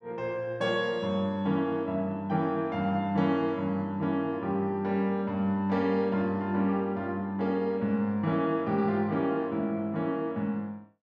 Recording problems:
none

